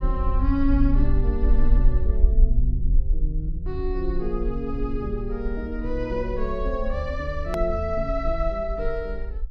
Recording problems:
rumble; below 50 Hz, SNR -1 dB
click at an edit; at 7.5 s

